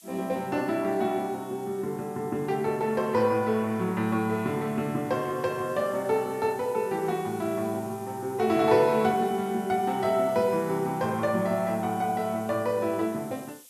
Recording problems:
background hiss; SNR 23 dB

